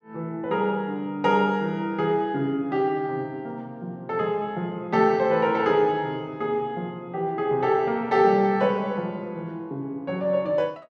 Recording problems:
none

